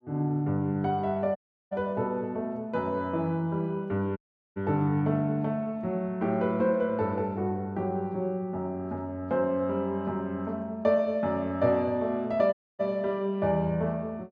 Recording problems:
audio cutting out; at 1.5 s, at 4 s and at 13 s

